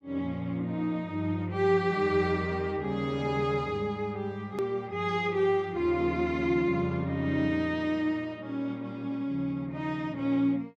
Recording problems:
edit click; at 4.5 s

